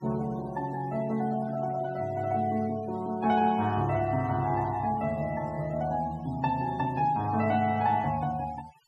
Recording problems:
noise reduction artefacts; signal-to-artefact ratio 22 dB

